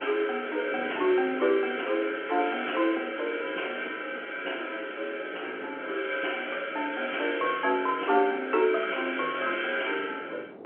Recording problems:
phone line; 300 Hz to 3.2 kHz, G.711
wind on the microphone; below 550 Hz, SNR 21 dB

